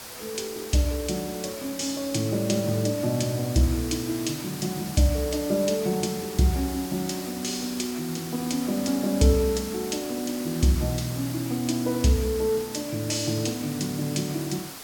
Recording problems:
hiss; slope -1 dB per octave, SNR 11 dB

